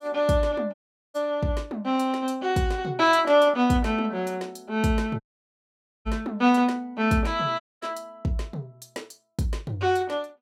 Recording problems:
dropout; at 0.5 s, at 5 s for 1 s and at 7.5 s

